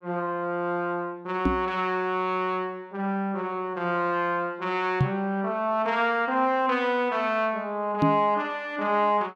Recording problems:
microphone thump; at 1.5 s, at 5 s and at 8 s; peak +7 dB vs average level

